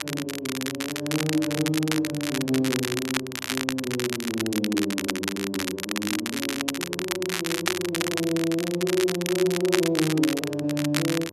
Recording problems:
hum; 50 Hz, harmonics up to 1.2 kHz, SNR 21 dB
crackle; vinyl, SNR 3 dB

